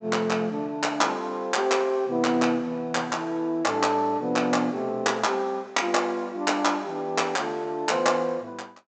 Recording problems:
treble cut off; nothing above 8 kHz

